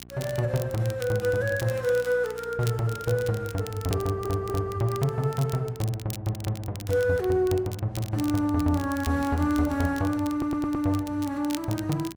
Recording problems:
electrical hum; 60 Hz, harmonics up to 1.1 kHz, SNR 23 dB
crackle; vinyl, SNR 17 dB
stutter; at 4 s and at 10 s

